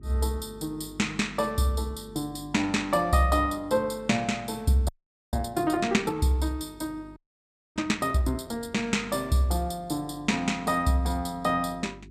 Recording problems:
hum; 50 Hz, harmonics up to 400 Hz, SNR 22 dB
audio freezing; at 5 s and at 7 s for 0.5 s

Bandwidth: 14.5 kHz